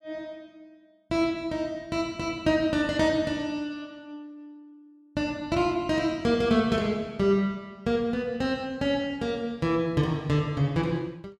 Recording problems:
none

